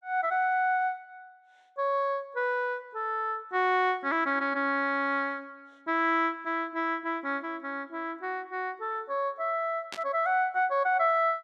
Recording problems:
static burst; at 10 s; peak -5 dB vs average level

